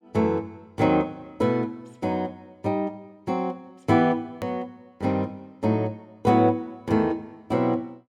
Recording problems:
hard cut with a click; at 4.5 s

